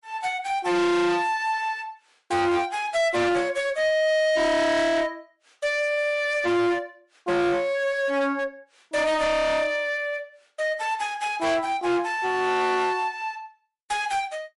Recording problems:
lossy compression; MP3, log-spectral distance 2 dB, nothing above 11 kHz
distortion; hard clipping, uneven, signal-to-distortion ratio 7 dB

